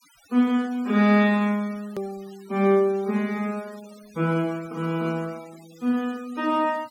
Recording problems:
denoising artefacts; signal-to-artefact ratio 25 dB
click at an edit; at 2 s

